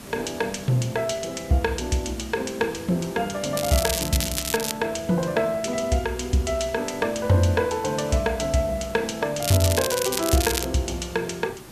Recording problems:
hiss; slope -4 dB per octave, SNR 17 dB
crackle; from 3.5 to 4.5 s and from 9.5 to 11 s; loose cable, SNR 3 dB

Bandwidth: 14 kHz